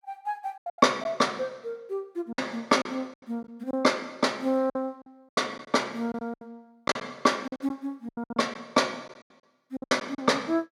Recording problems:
packet loss; 12% of the sound replaced, filled with silence

